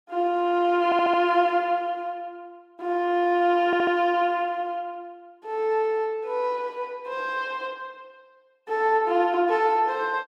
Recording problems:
audio stuttering; at 1 s and at 3.5 s

